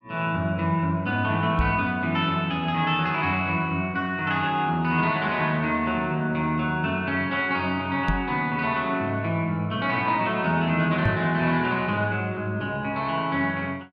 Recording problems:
microphone thump; at 1.5 s, at 8 s and at 11 s; peak +4 dB vs average level

